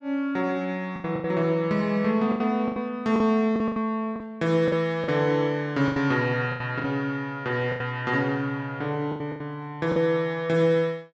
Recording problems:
packet loss; 10% of the sound replaced, filled with the last packet

